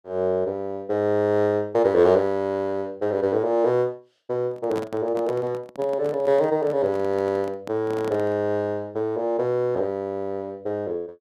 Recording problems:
microphone handling noise; from 4.5 to 8.5 s; peak -6 dB vs average level

